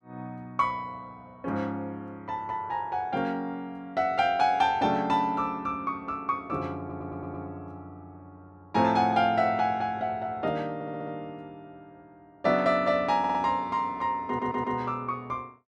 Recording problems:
audio stuttering; 4 times, first at 7 s

